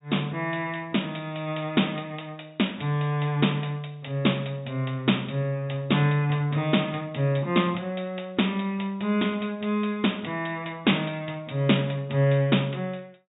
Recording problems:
treble missing; nothing above 4 kHz

